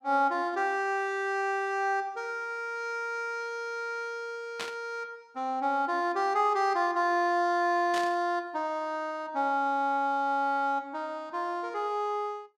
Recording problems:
static burst; at 4.5 s and at 8 s; peak -2 dB vs average level

